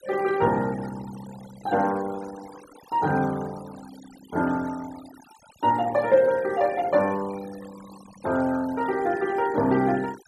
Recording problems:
noise reduction artefacts; signal-to-artefact ratio 19 dB

